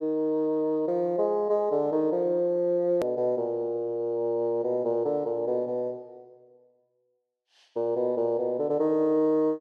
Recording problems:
edit click; at 3 s

